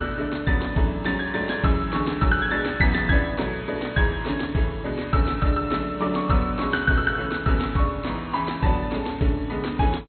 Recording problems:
lossy compression; MP2, log-spectral distance 4 dB, nothing above 4.1 kHz

